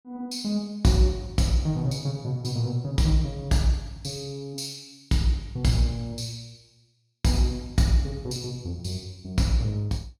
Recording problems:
none

